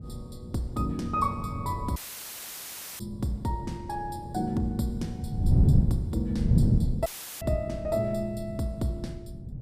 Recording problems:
wind noise; below 160 Hz, SNR -3 dB
dropout; at 2 s for 1 s and at 7 s; filled with static

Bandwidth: 15 kHz